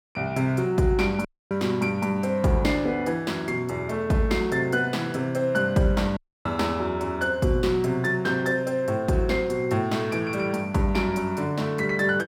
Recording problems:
dropout; at 1.5 s and at 6 s

